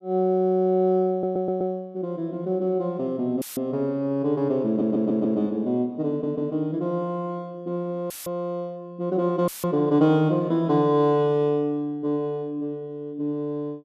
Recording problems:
stutter; at 1 s, at 4.5 s and at 6 s
dropout; at 3.5 s, at 8 s and at 9.5 s; filled with static

